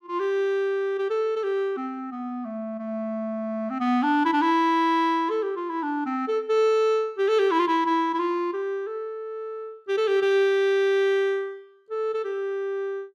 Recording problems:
none

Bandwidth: 13 kHz